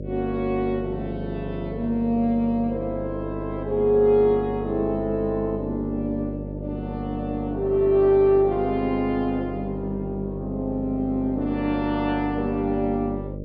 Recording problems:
low-pass filter; nothing above 5.5 kHz
electrical hum; 50 Hz, harmonics up to 600 Hz, SNR 9 dB

